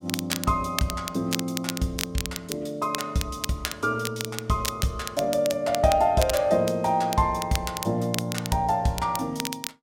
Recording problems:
crackle; vinyl, SNR 8 dB

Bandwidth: 16 kHz